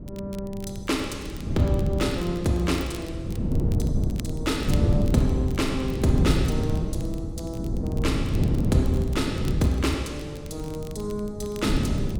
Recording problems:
wind on the microphone; below 200 Hz, SNR -1 dB
crackling; vinyl, SNR 20 dB

